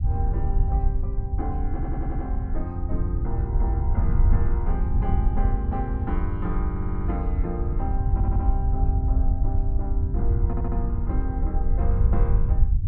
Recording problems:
rumble; below 78 Hz, SNR -8 dB
audio stuttering; 4 times, first at 1.5 s

